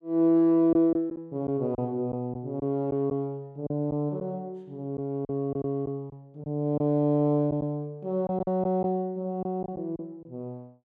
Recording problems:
lost packets; 6% of the sound replaced, filled with silence

